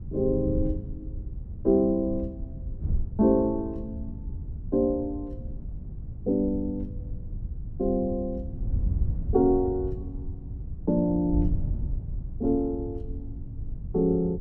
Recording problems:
wind on the microphone; below 100 Hz, SNR 8 dB

